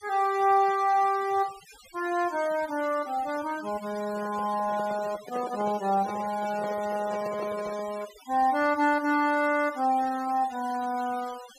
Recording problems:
denoising artefacts; signal-to-artefact ratio 18 dB
microphone handling noise; from 4 to 8 s; peak -8 dB vs average level

